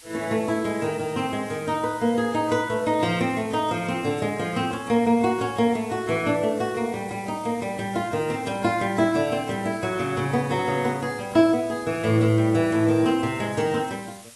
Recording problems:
codec artefacts; AAC, log-spectral distance 7 dB
background hiss; slope +1 dB per octave, SNR 21 dB

